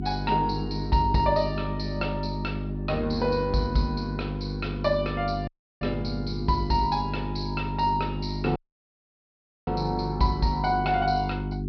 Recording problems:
treble cut off; nothing above 5.5 kHz
hum; 50 Hz, harmonics up to 400 Hz, SNR 4 dB
dropout; at 5.5 s and at 8.5 s for 1 s

